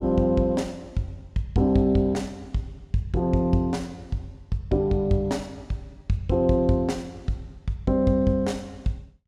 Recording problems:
none

